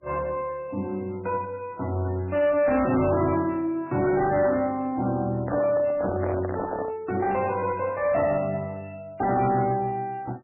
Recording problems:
lossy codec; MP3, log-spectral distance 2 dB, nothing above 2.4 kHz
distortion; soft clipping, signal-to-distortion ratio 10 dB
microphone handling noise; from 5.5 to 7 s; peak 0 dB vs average level

